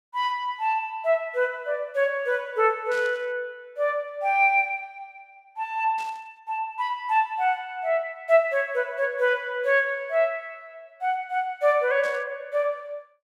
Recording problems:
static burst; at 3 s, at 6 s and at 12 s; peak -13 dB vs average level

